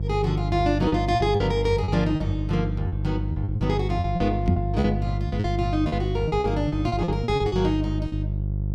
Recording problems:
hum; 50 Hz, harmonics up to 350 Hz, SNR 2 dB
packet loss; 12% of the sound replaced, filled with repeated pitch periods
knock on the microphone; at 4.5 s; peak +7 dB vs average level

